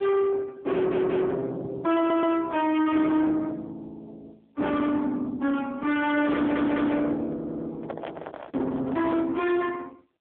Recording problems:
phone line; 170 Hz to 3.5 kHz, AMR-NB
distorted audio; soft clipping, signal-to-distortion ratio 6 dB
audio stuttering; 4 times, first at 0.5 s
microphone handling noise; from 8 to 9.5 s; peak -5 dB vs average level

